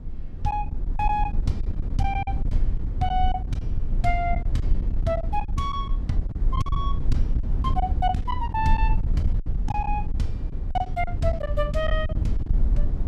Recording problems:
low-frequency rumble; below 64 Hz, SNR -1 dB
packet loss; 12% of the sound replaced, filled with silence

